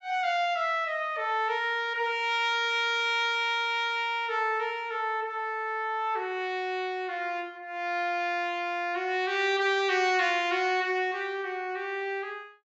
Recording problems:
low-pass filter; nothing above 8 kHz

